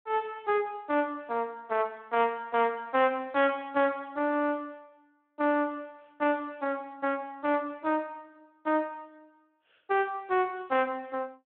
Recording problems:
phone line; 240 Hz to 3.5 kHz, Speex

